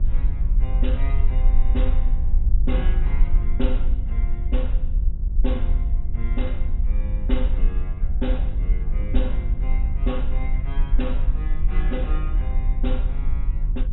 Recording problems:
low-pass filter; nothing above 3.9 kHz
hum; 50 Hz, harmonics up to 550 Hz, SNR 3 dB
low-frequency rumble; below 48 Hz, strongest tone 24 Hz, SNR -9 dB

